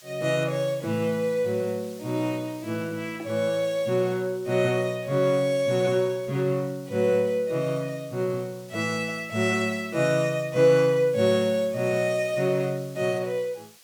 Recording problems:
hiss; slope +2 dB per octave, SNR 24 dB

